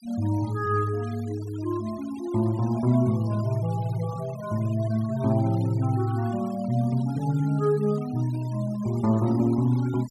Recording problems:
denoising artefacts; signal-to-artefact ratio 22 dB

